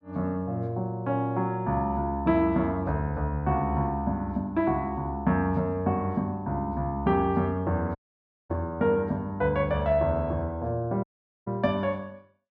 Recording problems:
audio cutting out; at 8 s for 0.5 s and at 11 s

